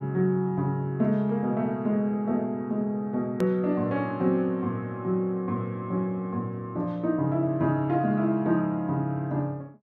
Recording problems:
click at an edit; at 3.5 s

